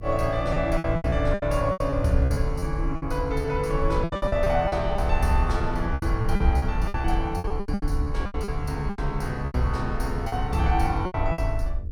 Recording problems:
electrical hum; 50 Hz, harmonics up to 500 Hz, SNR 21 dB
low-frequency rumble; below 68 Hz, SNR 5 dB
lost packets; 15% of the sound replaced, filled with repeated pitch periods

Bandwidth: 17 kHz